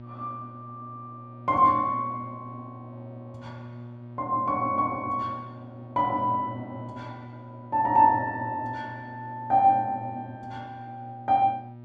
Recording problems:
hum; 60 Hz, harmonics up to 960 Hz, SNR 18 dB

